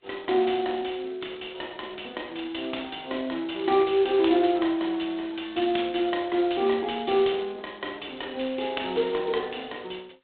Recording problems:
phone line; 280 Hz to 3.8 kHz, G.726

